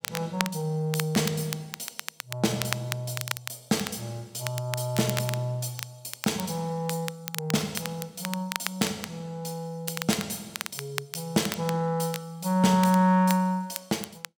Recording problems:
crackle; vinyl, SNR 8 dB

